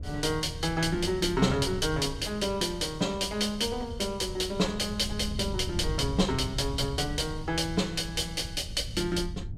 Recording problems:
wind noise; below 110 Hz, SNR 10 dB

